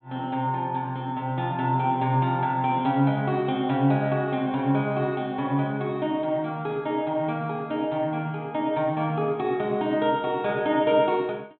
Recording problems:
treble missing; nothing above 4.1 kHz

